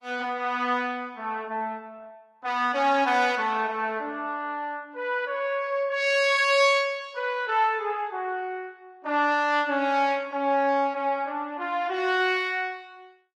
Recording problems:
codec artefacts; Opus, log-spectral distance 2 dB

